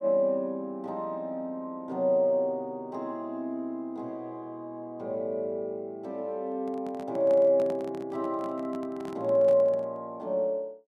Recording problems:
microphone handling noise; from 6.5 to 10 s; peak -10 dB vs average level

